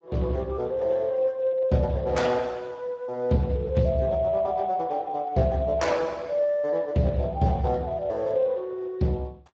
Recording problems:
lossy compression; Speex, log-spectral distance 2 dB

